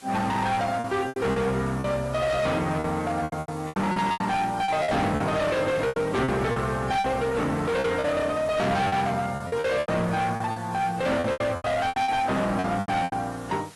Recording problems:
codec artefacts; AAC, log-spectral distance 4 dB, nothing above 11.6 kHz
distorted audio; hard clipping, signal-to-distortion ratio 7 dB
background hiss; slope -1 dB per octave, SNR 21 dB
lost packets; 13% of the sound replaced, filled with repeated pitch periods

